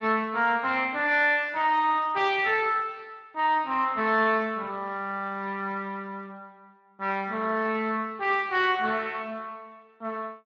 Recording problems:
lossy codec; Speex, log-spectral distance 3 dB

